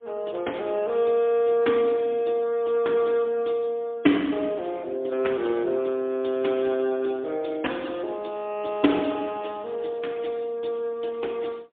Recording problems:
phone line; 240 Hz to 3.6 kHz, AMR-NB, then MP3

